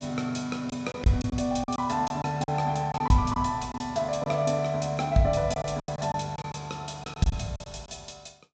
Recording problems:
treble missing; nothing above 8 kHz
lost packets; 9% of the sound replaced, filled with silence

